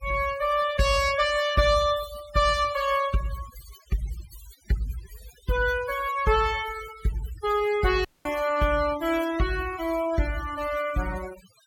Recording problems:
noise reduction artefacts; signal-to-artefact ratio 14 dB
dropout; at 8 s

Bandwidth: 17.5 kHz